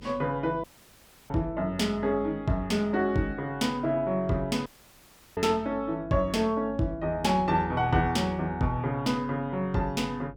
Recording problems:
electrical hum; 50 Hz, harmonics up to 550 Hz, SNR 20 dB
dropout; at 0.5 s for 0.5 s and at 4.5 s for 0.5 s

